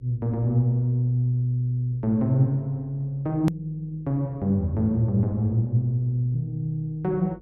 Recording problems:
electrical hum; 50 Hz, harmonics up to 500 Hz, SNR 27 dB
hard cut with a click; at 3.5 s

